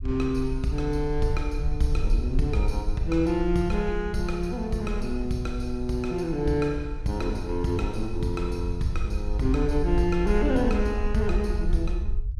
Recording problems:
low-frequency rumble; below 58 Hz, SNR 4 dB

